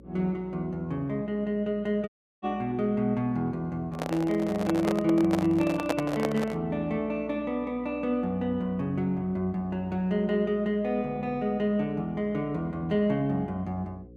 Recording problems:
electrical hum; 60 Hz, harmonics up to 540 Hz, SNR 22 dB
audio cutting out; at 2 s
microphone handling noise; from 4 to 6.5 s; peak +4 dB vs average level

